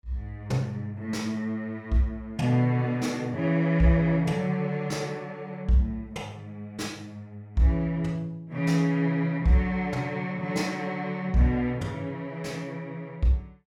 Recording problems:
none

